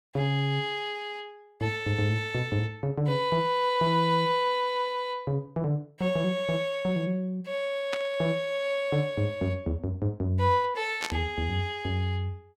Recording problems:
static burst; at 8 s and at 11 s; peak 0 dB vs average level

